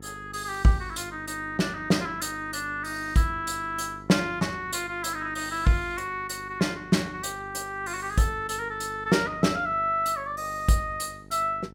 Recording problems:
hum; 50 Hz, harmonics up to 950 Hz, SNR 19 dB

